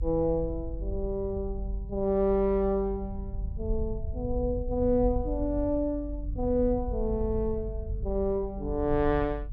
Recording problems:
low-frequency rumble; below 70 Hz, SNR 7 dB

